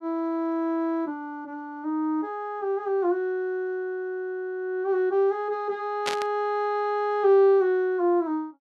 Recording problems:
burst of static; at 6 s; peak +1 dB vs average level

